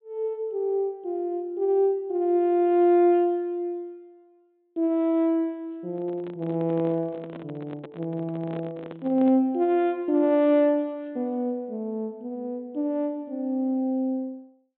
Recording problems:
treble missing; nothing above 4 kHz
microphone handling noise; from 6 to 9.5 s; peak -11 dB vs average level

